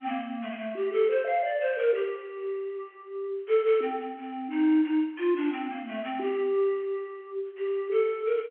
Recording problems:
telephone audio; 260 Hz to 3.3 kHz, G.711

